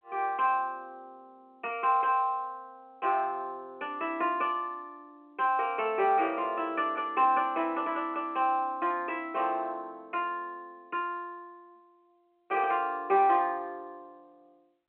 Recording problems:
telephone audio; 260 Hz to 3.1 kHz, G.711

